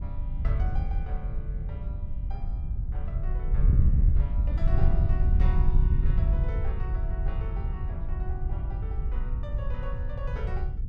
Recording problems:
wind on the microphone; below 80 Hz, SNR -14 dB

